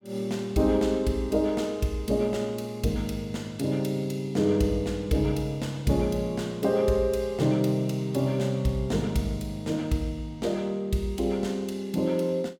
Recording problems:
none

